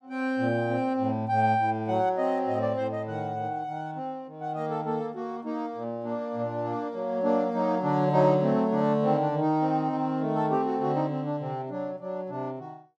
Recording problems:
none

